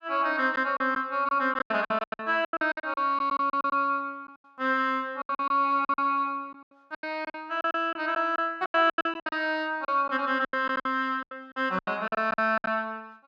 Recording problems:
lost packets; 17% of the sound replaced, filled with silence

